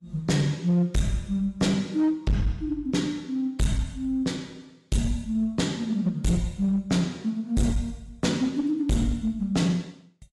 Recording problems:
lossy codec; AAC, log-spectral distance 2 dB, nothing above 11.3 kHz
distorted audio; hard clipping, uneven, signal-to-distortion ratio 8 dB

